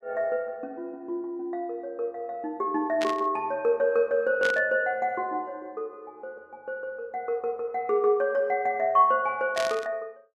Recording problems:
static burst; at 3 s, at 4.5 s and at 9.5 s; peak -2 dB vs average level

